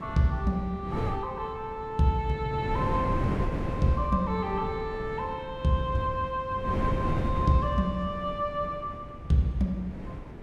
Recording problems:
wind on the microphone; below 320 Hz, SNR 6 dB

